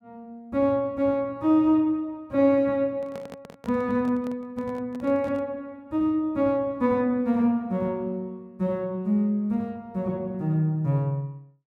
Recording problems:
microphone handling noise; from 3 to 5.5 s; peak -12 dB vs average level

